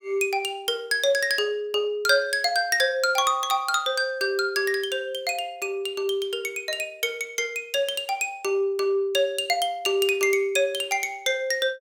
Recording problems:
none

